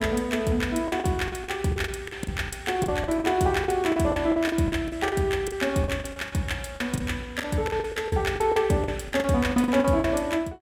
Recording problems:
lost packets; 16% of the sound replaced, filled with the last packet

